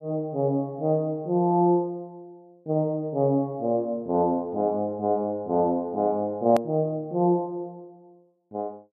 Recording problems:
hard cut with a click; at 6.5 s

